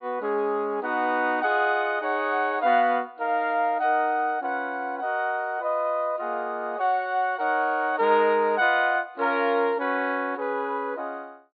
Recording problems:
low-pass filter; nothing above 4.6 kHz

